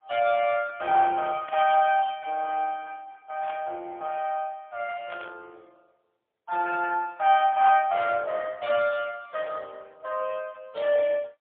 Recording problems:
telephone audio; 240 Hz to 3.1 kHz, AMR-NB, then MP3
burst of static; 4 times, first at 1.5 s; peak -12 dB vs average level

